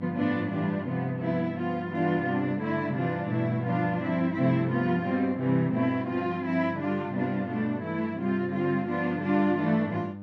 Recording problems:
hum; 50 Hz, harmonics up to 900 Hz, SNR 13 dB

